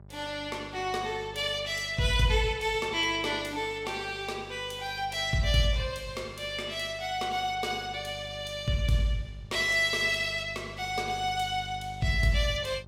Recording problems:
mains hum; 50 Hz, harmonics up to 1 kHz, SNR 18 dB

